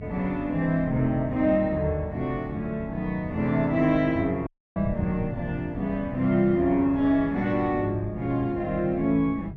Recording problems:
hum; 50 Hz, harmonics up to 550 Hz, SNR 19 dB
wind on the microphone; below 160 Hz, SNR 14 dB
dropout; at 4.5 s

